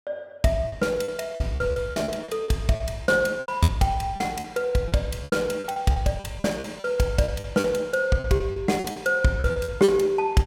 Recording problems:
lost packets; 15% of the sound replaced, filled with repeated pitch periods

